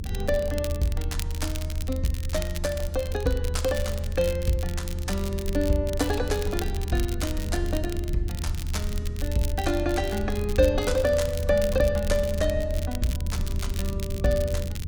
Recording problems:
low-frequency rumble; below 80 Hz, SNR 3 dB
crackle; vinyl, SNR 13 dB

